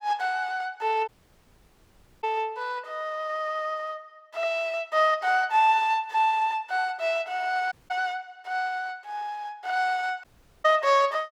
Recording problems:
audio cutting out; at 1 s for 1 s, at 7.5 s and at 10 s

